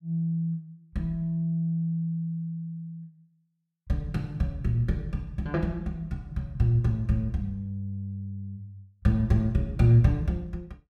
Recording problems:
none

